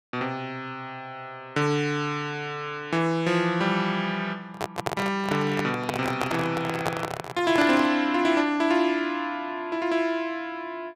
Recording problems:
microphone handling noise; from 4.5 to 8 s; peak +3 dB vs average level

